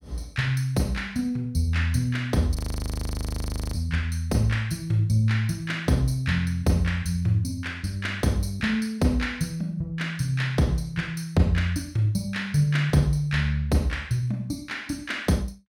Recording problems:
audio freezing; at 2.5 s for 1 s

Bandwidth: 17 kHz